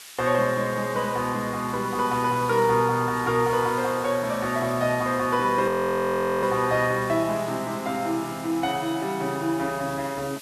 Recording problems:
hiss; slope +3 dB per octave, SNR 17 dB
audio freezing; at 5.5 s for 0.5 s

